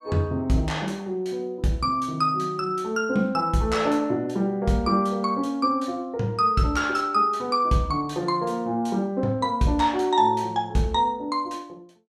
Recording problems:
none

